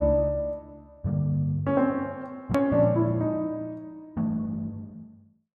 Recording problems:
click at an edit; at 2.5 s

